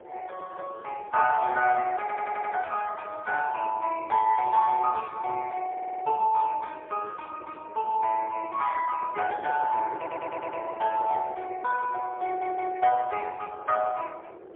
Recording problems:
phone line; 320 Hz to 3.3 kHz, AMR-NB, then MP3
wind on the microphone; below 630 Hz, SNR 17 dB
audio stuttering; 4 times, first at 2 s

